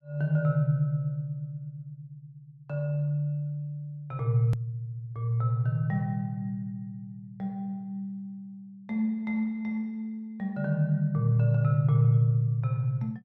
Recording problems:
hard cut with a click; at 4.5 s

